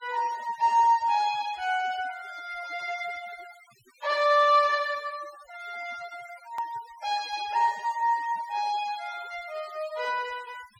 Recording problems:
noise reduction artefacts; signal-to-artefact ratio 20 dB
hard cut with a click; at 6.5 s

